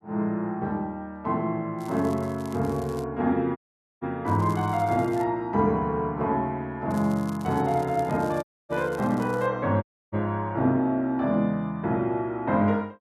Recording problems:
crackling; from 2 to 3 s, at 4.5 s and from 7 to 9.5 s; loose cable, SNR 24 dB
audio cutting out; at 3.5 s, at 8.5 s and at 10 s

